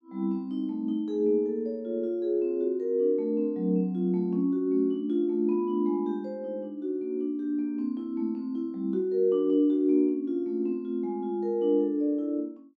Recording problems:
none

